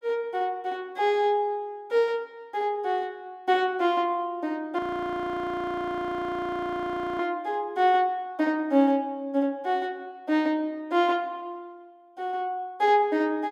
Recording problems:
audio freezing; at 5 s for 2.5 s

